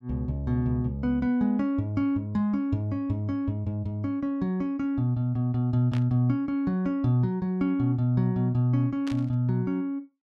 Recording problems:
burst of static; at 6 s and at 9 s; peak -10 dB vs average level

